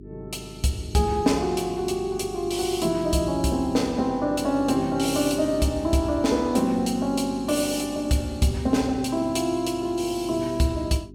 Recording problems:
hum; 50 Hz, harmonics up to 400 Hz, SNR 18 dB

